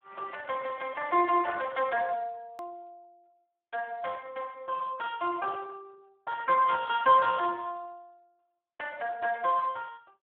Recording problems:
telephone audio; 300 Hz to 2.8 kHz, Speex
hard cut with a click; at 2.5 s

